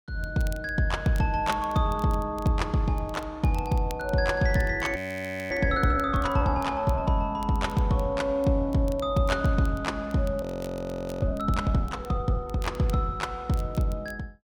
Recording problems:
crackle; vinyl, SNR 25 dB
frozen audio; at 5 s for 0.5 s and at 10 s for 1 s

